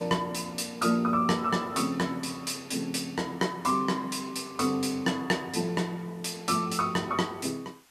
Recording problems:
hiss; SNR 28 dB

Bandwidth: 14.5 kHz